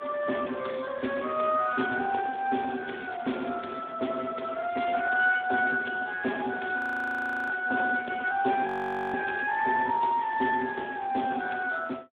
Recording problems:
phone line; 220 Hz to 3.4 kHz, Speex
audio freezing; at 7 s for 0.5 s and at 8.5 s

